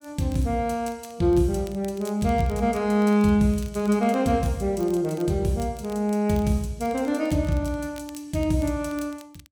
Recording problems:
crackle; vinyl, SNR 26 dB

